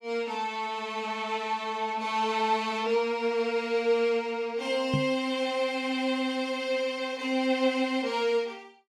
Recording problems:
knock on the microphone; at 5 s; peak +4 dB vs average level

